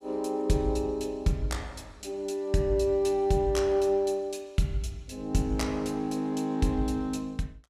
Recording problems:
none

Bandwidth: 14.5 kHz